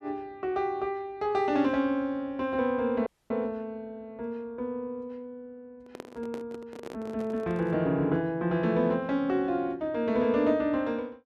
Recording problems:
audio cutting out; at 3 s
microphone handling noise; from 6 to 8 s; peak -8 dB vs average level

